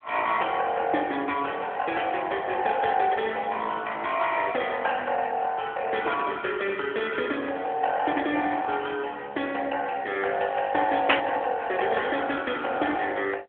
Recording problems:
telephone audio; 340 Hz to 3.3 kHz, AMR-NB
static burst; at 11 s; peak +10 dB vs average level

